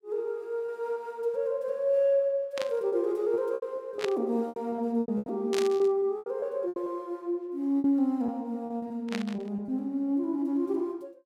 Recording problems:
lost packets; 9% of the sound replaced, filled with repeated pitch periods
burst of static; 4 times, first at 2.5 s; peak -1 dB vs average level

